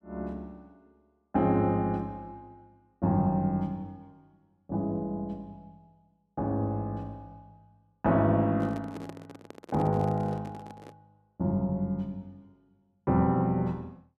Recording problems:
microphone handling noise; from 8.5 to 11 s; peak -9 dB vs average level

